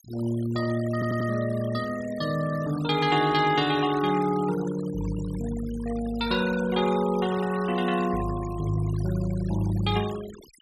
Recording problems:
noise reduction artefacts; signal-to-artefact ratio 16 dB
audio stuttering; at 1 s

